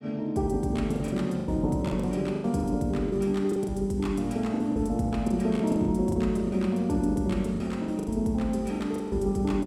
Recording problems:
packet loss; 12% of the sound replaced, filled with the last packet

